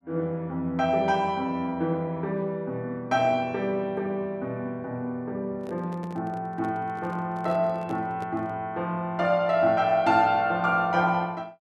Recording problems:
handling noise; from 5.5 to 8.5 s; peak -9 dB vs average level

